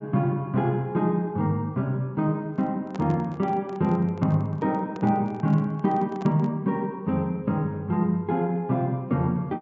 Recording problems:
low-pass filter; nothing above 8 kHz
microphone handling noise; from 2.5 to 6.5 s; peak -9 dB vs average level

